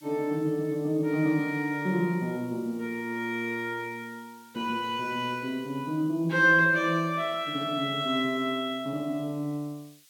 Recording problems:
background hiss; SNR 28 dB

